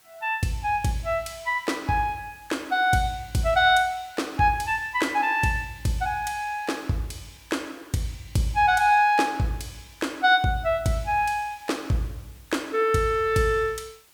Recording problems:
background hiss; slope 0 dB per octave, SNR 28 dB

